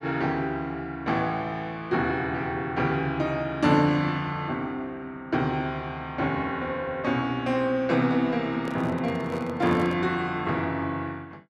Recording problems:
handling noise; from 8.5 to 10 s; peak -5 dB vs average level

